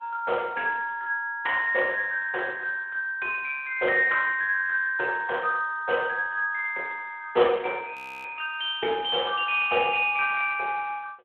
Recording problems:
phone line; 320 Hz to 3.4 kHz, Speex
audio freezing; at 8 s

